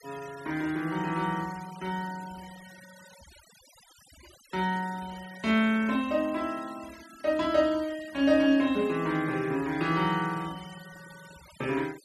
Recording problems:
denoising artefacts; signal-to-artefact ratio 21 dB

